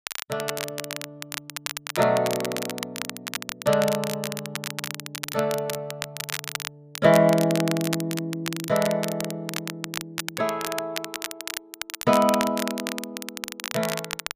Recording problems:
crackling; vinyl, SNR 7 dB

